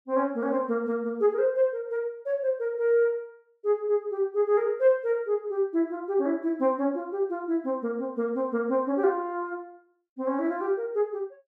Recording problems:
none

